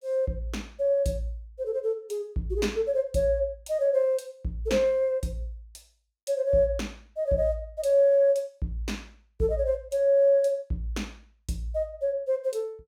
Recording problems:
none

